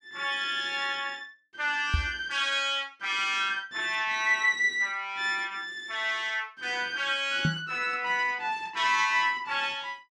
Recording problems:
knock on the microphone; at 2 s and at 7.5 s; peak +4 dB vs average level

